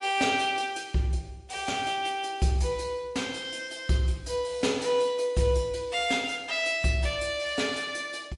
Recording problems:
lossy compression; MP3, log-spectral distance 3 dB

